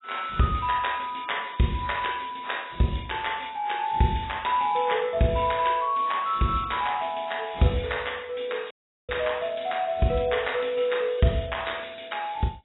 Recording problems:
codec artefacts; AAC, log-spectral distance 8 dB, nothing above 3.8 kHz
dropout; at 8.5 s

